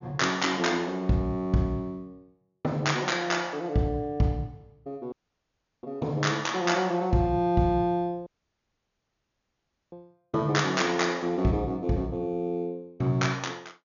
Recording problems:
treble missing; nothing above 6.9 kHz
dropout; at 5 s for 0.5 s and at 8.5 s for 1.5 s

